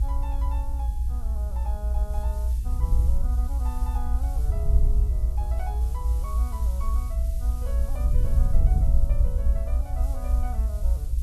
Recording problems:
hum; 60 Hz, harmonics up to 480 Hz, SNR 13 dB
background hiss; slope +3 dB per octave, SNR 10 dB
low-frequency rumble; below 62 Hz, strongest tone 60 Hz, SNR -14 dB
wind on the microphone; below 62 Hz, SNR -11 dB

